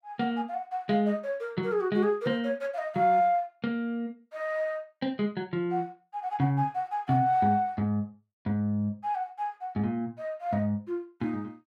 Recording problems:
none

